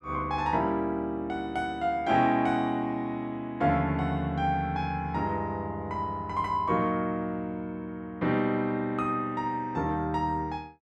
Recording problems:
none

